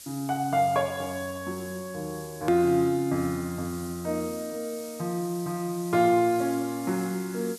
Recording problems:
hiss; SNR 16 dB
click at an edit; at 2.5 s

